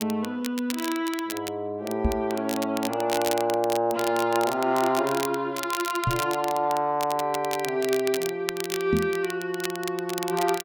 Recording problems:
crackling; vinyl, SNR 10 dB
microphone thump; at 2 s, at 6 s and at 9 s; peak +5 dB vs average level

